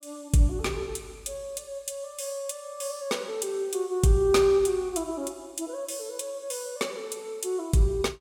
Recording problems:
none

